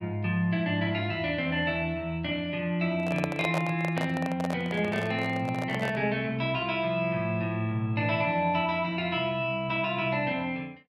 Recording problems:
handling noise; from 3 to 6 s; peak 0 dB vs average level

